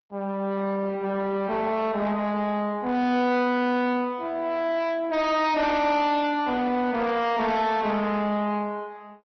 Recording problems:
treble missing; nothing above 5.7 kHz
codec artefacts; Opus, log-spectral distance 2 dB
distorted audio; soft clipping, signal-to-distortion ratio 8 dB

